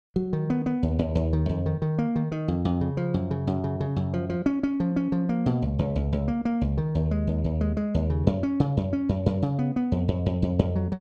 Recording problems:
none

